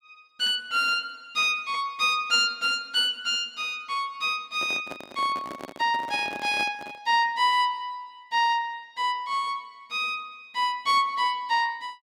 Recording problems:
microphone handling noise; from 4.5 to 7 s; peak -8 dB vs average level

